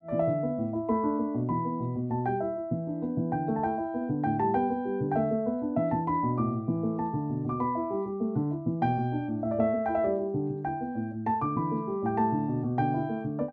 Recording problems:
none

